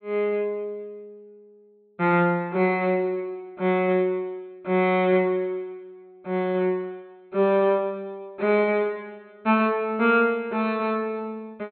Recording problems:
low-pass filter; nothing above 4.2 kHz

